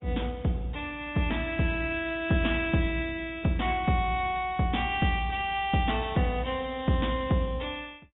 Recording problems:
treble cut off; nothing above 3.3 kHz
lossy compression; Opus, log-spectral distance 3 dB

